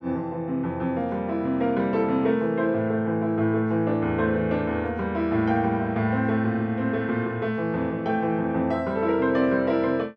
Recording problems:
none

